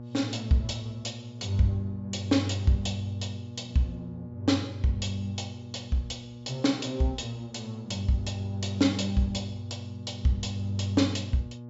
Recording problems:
treble missing; nothing above 8 kHz
electrical hum; 60 Hz, harmonics up to 840 Hz, SNR 13 dB

